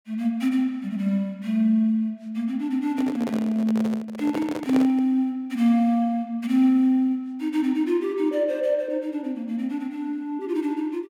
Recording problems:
microphone handling noise; from 3 to 5 s; peak -2 dB vs average level

